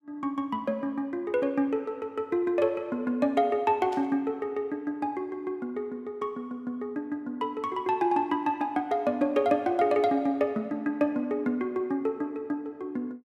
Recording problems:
static burst; at 4 s; peak -14 dB vs average level

